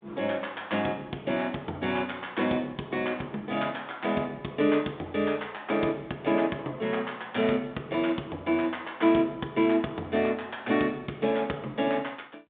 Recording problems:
telephone audio; 170 Hz to 3.7 kHz, G.726

